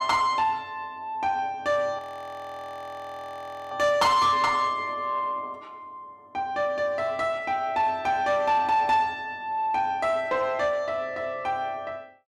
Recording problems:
distortion; soft clipping, signal-to-distortion ratio 12 dB
frozen audio; at 2 s for 1.5 s

